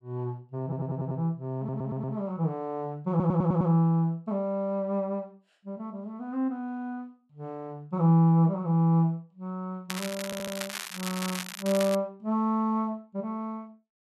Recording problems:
stutter; 4 times, first at 0.5 s
crackle; from 10 to 12 s; loose cable, SNR 8 dB

